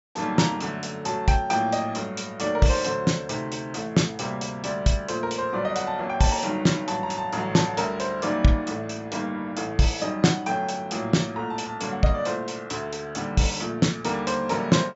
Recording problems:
low-pass filter; nothing above 8 kHz

